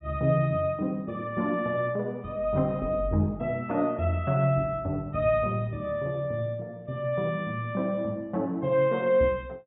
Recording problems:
treble cut off; nothing above 4 kHz

